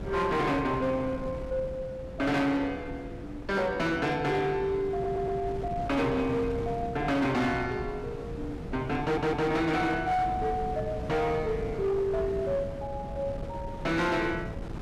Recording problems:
distorted audio; hard clipping, signal-to-distortion ratio 11 dB
wind noise; below 340 Hz, SNR 10 dB
stutter; at 5 s and at 9 s

